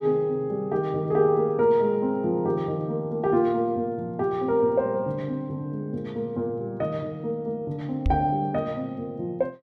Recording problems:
knock on the microphone; at 8 s; peak +4 dB vs average level

